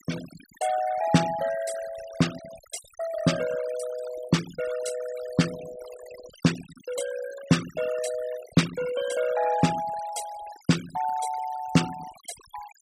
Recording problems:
denoising artefacts; signal-to-artefact ratio 13 dB

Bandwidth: 15 kHz